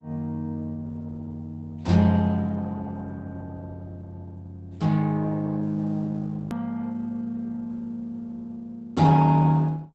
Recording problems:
codec artefacts; Opus, log-spectral distance 2 dB, nothing above 13.1 kHz
hard cut with a click; at 6.5 s

